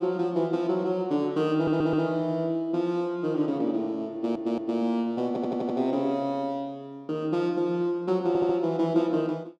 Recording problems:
stutter; 4 times, first at 1.5 s

